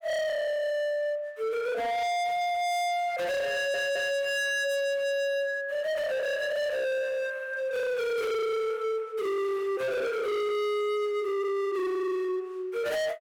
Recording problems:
distorted audio; hard clipping, signal-to-distortion ratio 6 dB
audio stuttering; at 3.5 s

